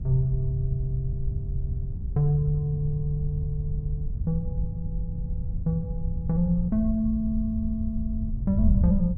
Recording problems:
wind on the microphone; below 94 Hz, SNR 3 dB

